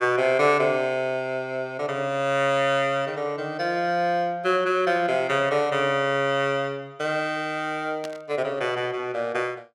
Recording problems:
static burst; at 8 s; peak -10 dB vs average level

